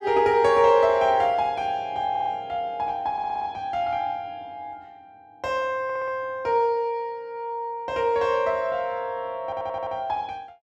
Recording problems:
stutter; 4 times, first at 2 s

